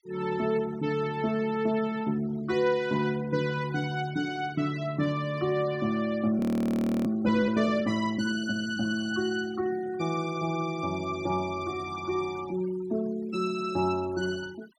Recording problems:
noise reduction artefacts; signal-to-artefact ratio 20 dB
audio freezing; at 6.5 s for 0.5 s

